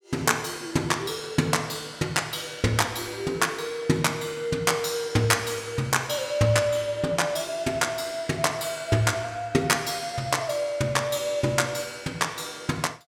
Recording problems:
none

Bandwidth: 18 kHz